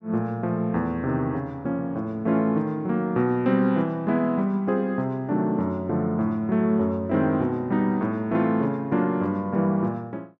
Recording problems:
none

